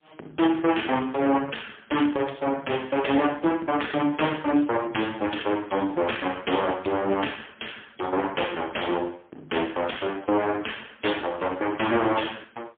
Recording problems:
phone line; 240 Hz to 3.5 kHz, AMR-NB, then MP3

